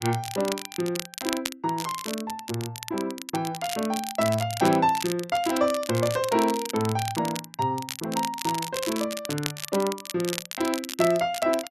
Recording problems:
crackling; vinyl, SNR 8 dB

